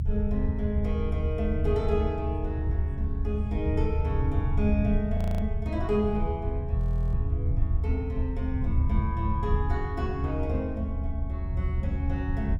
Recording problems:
low-frequency rumble; below 86 Hz, SNR -3 dB
audio freezing; at 5 s and at 7 s

